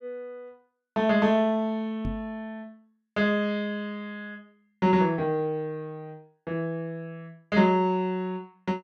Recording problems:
microphone thump; at 2 s; peak -3 dB vs average level

